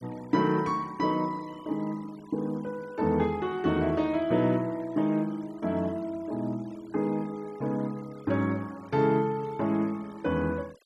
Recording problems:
noise reduction artefacts; signal-to-artefact ratio 25 dB

